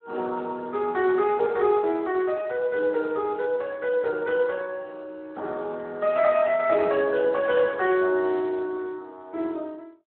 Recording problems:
phone line; 300 Hz to 3.4 kHz, Speex

